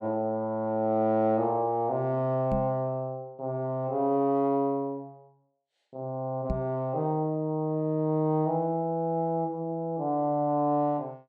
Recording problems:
microphone thump; at 2.5 s and at 6.5 s; peak 0 dB vs average level

